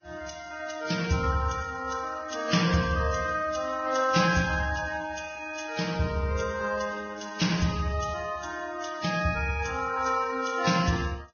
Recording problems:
lossy codec; Vorbis, then AAC, log-spectral distance 5 dB, nothing above 6.5 kHz

